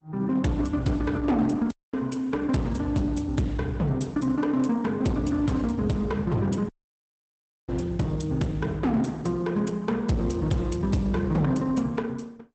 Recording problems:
codec artefacts; Opus, log-spectral distance 3 dB, nothing above 8 kHz
distorted audio; hard clipping, uneven, signal-to-distortion ratio 11 dB
audio cutting out; at 1.5 s and at 6.5 s for 1 s

